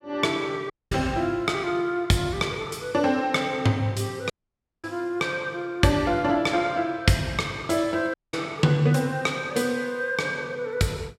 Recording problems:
dropout; at 0.5 s, at 4.5 s for 0.5 s and at 8 s

